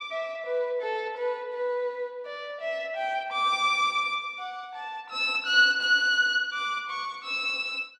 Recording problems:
none

